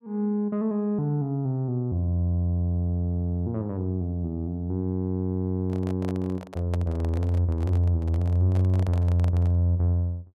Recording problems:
microphone handling noise; from 5.5 to 9.5 s; peak -7 dB vs average level

